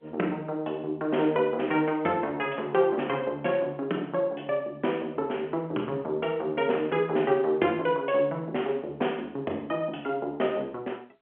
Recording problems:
phone line; 220 Hz to 3.3 kHz, G.711

